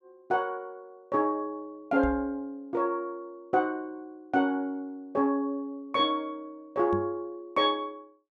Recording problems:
microphone thump; at 2 s and at 7 s; peak -2 dB vs average level

